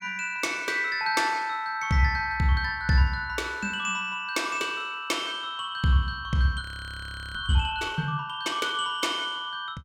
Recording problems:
audio freezing; at 6.5 s for 0.5 s

